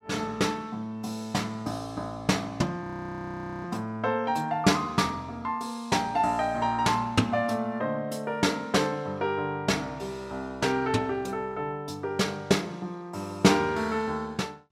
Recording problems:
frozen audio; at 3 s for 1 s

